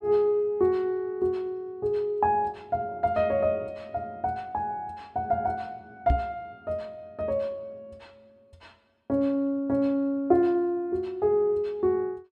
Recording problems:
knock on the microphone; at 6 s; peak +6 dB vs average level

